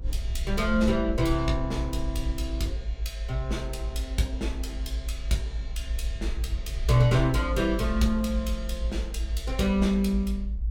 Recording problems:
rumble; below 58 Hz, strongest tone 50 Hz, SNR 4 dB

